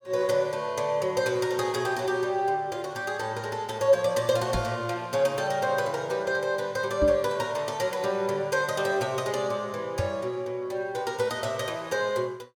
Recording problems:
microphone thump; at 4.5 s, at 7 s and at 10 s; peak +2 dB vs average level

